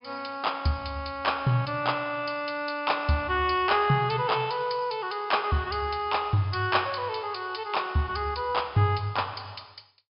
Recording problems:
treble missing; nothing above 5.5 kHz

